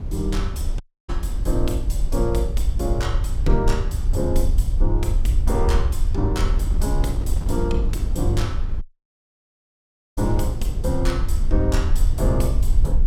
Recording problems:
electrical hum; 50 Hz, harmonics up to 500 Hz, SNR 20 dB
low-frequency rumble; below 58 Hz, SNR -2 dB
wind noise; below 200 Hz, SNR 9 dB
dropout; at 1 s and at 9 s for 1.5 s

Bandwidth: 17 kHz